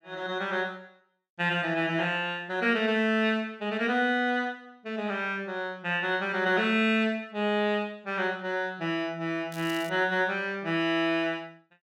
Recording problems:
crackling; at 9.5 s; loose cable, SNR 19 dB

